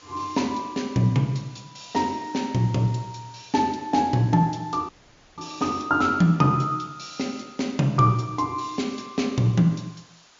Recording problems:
low-pass filter; nothing above 7.2 kHz
background hiss; slope 0 dB per octave, SNR 28 dB
dropout; at 5 s

